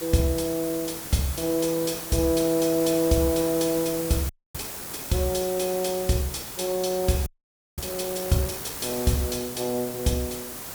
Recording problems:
hiss; slope -3 dB per octave, SNR 7 dB
frozen audio; at 4.5 s and at 7.5 s for 0.5 s

